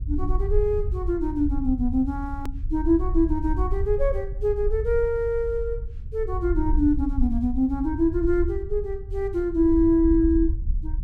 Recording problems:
low-frequency rumble; below 64 Hz, SNR 6 dB
hard cut with a click; at 2.5 s

